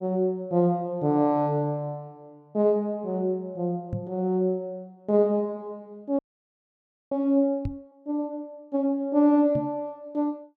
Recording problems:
knock on the microphone; at 4 s, at 7.5 s and at 9.5 s; peak -2 dB vs average level
frozen audio; at 6 s for 1 s

